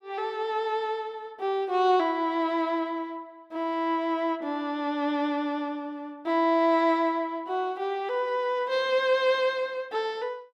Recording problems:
none

